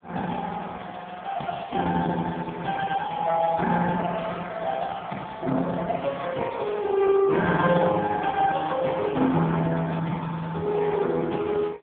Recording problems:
telephone audio; 130 Hz to 3.5 kHz, AMR-NB

